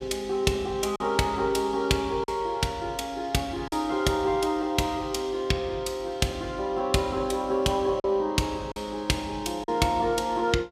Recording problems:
packet loss; 2% of the sound replaced, filled with silence

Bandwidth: 15.5 kHz